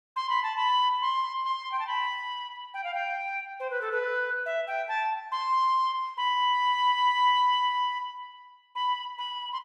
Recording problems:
none

